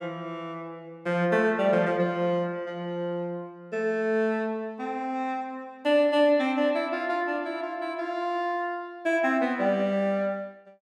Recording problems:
none

